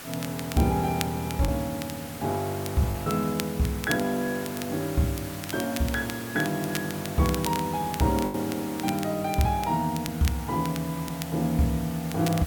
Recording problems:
hiss; slope -1 dB per octave, SNR 12 dB
crackling; vinyl, SNR 12 dB
packet loss; 1.6% of the sound replaced, filled with the last packet

